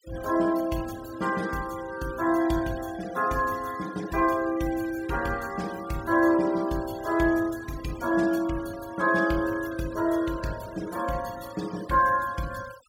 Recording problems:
denoising artefacts; signal-to-artefact ratio 18 dB

